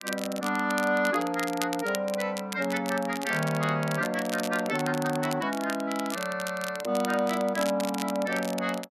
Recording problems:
crackling; vinyl, SNR 11 dB

